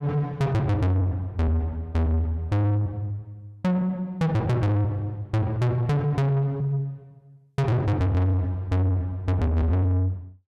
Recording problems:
distorted audio; soft clipping, signal-to-distortion ratio 7 dB

